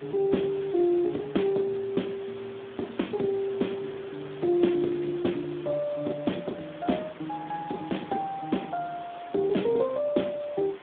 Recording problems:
telephone audio; 190 Hz to 3.6 kHz, Speex
hiss; SNR 18 dB

